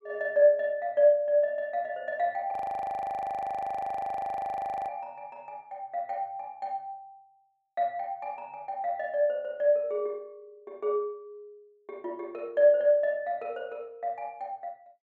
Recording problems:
audio freezing; at 2.5 s for 2.5 s

